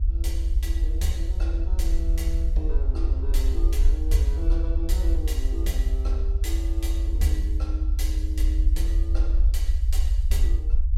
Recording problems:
rumble; below 58 Hz, SNR -9 dB

